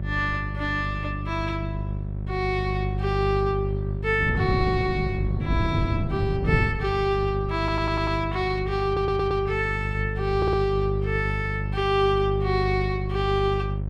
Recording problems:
electrical hum; 50 Hz, harmonics up to 600 Hz, SNR 3 dB
wind noise; below 190 Hz, SNR 8 dB
audio stuttering; at 7.5 s, at 9 s and at 10 s

